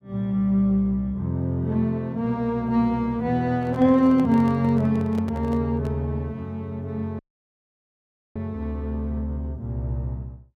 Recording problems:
microphone handling noise; from 3.5 to 6 s; peak -10 dB vs average level
dropout; at 7 s for 1 s

